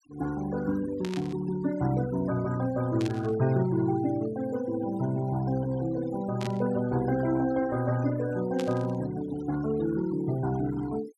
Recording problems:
noise reduction artefacts; signal-to-artefact ratio 16 dB
burst of static; 4 times, first at 1 s; peak -6 dB vs average level

